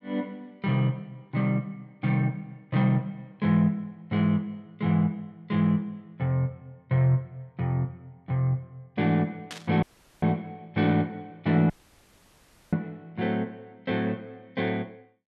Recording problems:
burst of static; at 9.5 s; peak -6 dB vs average level
audio cutting out; at 10 s and at 12 s for 1 s

